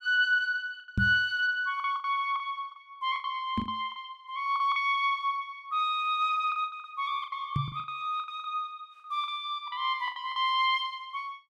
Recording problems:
lost packets; 12% of the sound replaced, filled with the last packet
microphone bump; at 1 s, at 3.5 s and at 7.5 s; peak +4 dB vs average level

